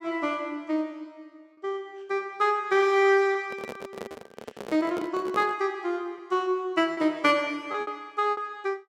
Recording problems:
packet loss; 3% of the sound replaced, filled with repeated pitch periods
handling noise; from 3.5 to 5.5 s; peak -5 dB vs average level

